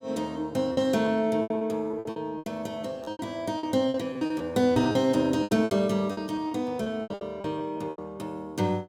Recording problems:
packet loss; 15% of the sound replaced, filled with repeated pitch periods

